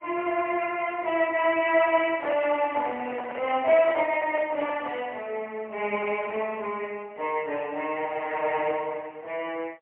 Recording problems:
phone line; 340 Hz to 3.1 kHz, AMR-NB, then MP3
microphone handling noise; from 2 to 5 s; peak -1 dB vs average level

